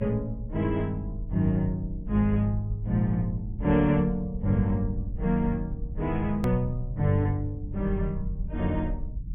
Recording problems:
treble missing; nothing above 3.5 kHz
low-frequency rumble; below 76 Hz, SNR 9 dB
click at an edit; at 6.5 s

